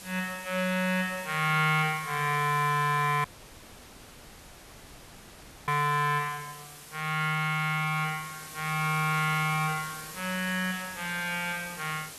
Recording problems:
background hiss; slope -1 dB per octave, SNR 14 dB
dropout; at 3 s for 2.5 s

